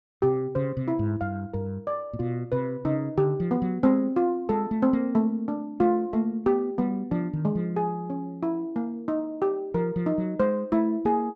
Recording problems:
none

